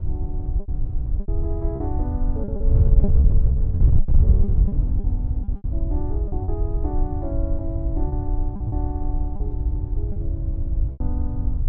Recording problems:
wind noise; below 78 Hz, SNR -11 dB
packet loss; 10% of the sound replaced, filled with repeated pitch periods

